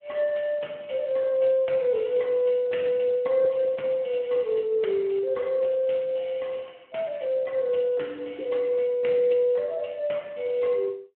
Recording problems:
phone line; 260 Hz to 3.2 kHz, Speex

